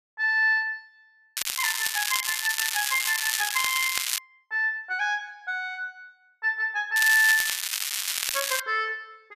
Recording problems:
crackling; from 1.5 to 4 s and from 7 to 8.5 s; loose cable, SNR 1 dB

